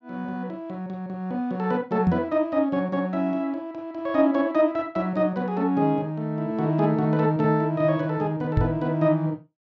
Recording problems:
treble cut off; nothing above 8 kHz
microphone thump; at 2 s and at 8.5 s; peak +6 dB vs average level

